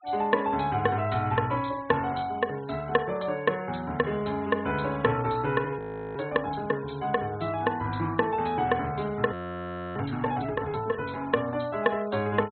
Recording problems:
low-pass filter; nothing above 4 kHz
noise reduction artefacts; signal-to-artefact ratio 24 dB
audio freezing; at 6 s and at 9.5 s for 0.5 s

